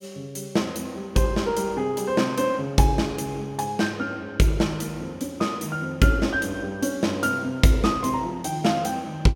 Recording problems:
none

